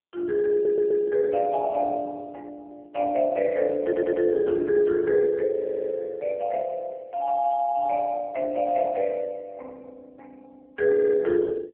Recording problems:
phone line; 260 Hz to 2.3 kHz, AMR-NB
stutter; 4 times, first at 0.5 s

